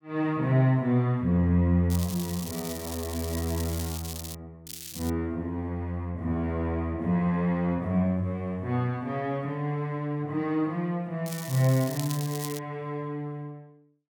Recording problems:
crackling; from 2 to 4.5 s, at 4.5 s and from 11 to 13 s; loose cable, SNR 10 dB

